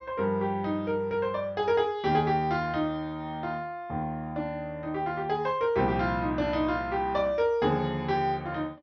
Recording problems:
low-pass filter; nothing above 6.2 kHz

